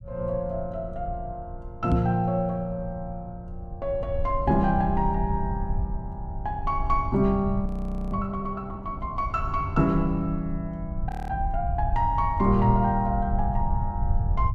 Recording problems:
rumble; below 84 Hz, SNR 6 dB
microphone bump; at 2 s; peak +6 dB vs average level
frozen audio; at 7.5 s and at 11 s

